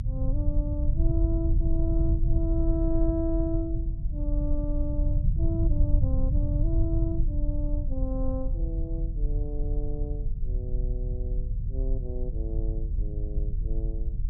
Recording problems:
low-frequency rumble; below 72 Hz, SNR -6 dB

